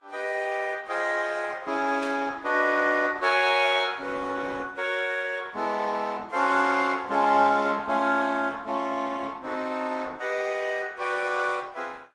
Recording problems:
lossy compression; Opus, then Vorbis, log-spectral distance 5 dB, nothing above 11.6 kHz
static burst; at 2 s; peak -12 dB vs average level

